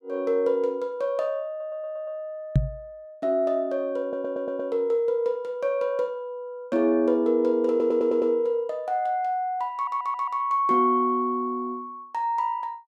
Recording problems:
stutter; 4 times, first at 1.5 s
microphone bump; at 2.5 s; peak +8 dB vs average level

